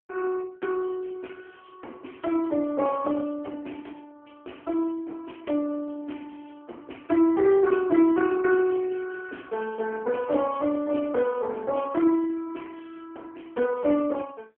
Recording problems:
phone line; 260 Hz to 3.1 kHz, AMR-NB

